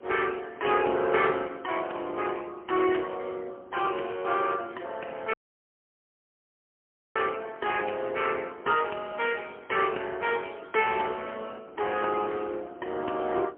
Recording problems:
telephone audio; 260 Hz to 3.3 kHz, AMR-NB, then MP3
wind noise; below 670 Hz, SNR 22 dB
audio cutting out; at 5.5 s for 2 s

